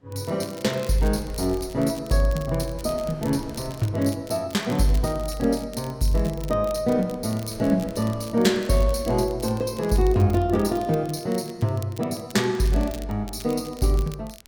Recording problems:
wind on the microphone; below 320 Hz, SNR 21 dB
crackling; vinyl, SNR 21 dB

